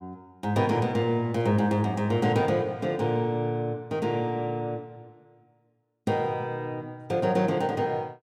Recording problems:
none

